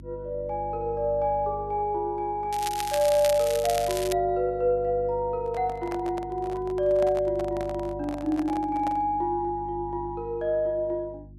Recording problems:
hum; 50 Hz, harmonics up to 350 Hz, SNR 17 dB
crackling; from 2.5 to 4 s; loose cable, SNR 8 dB
microphone handling noise; from 5.5 to 9 s; peak -6 dB vs average level

